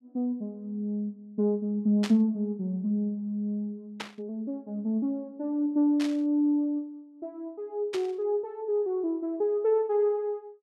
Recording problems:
static burst; 4 times, first at 2 s; peak -3 dB vs average level

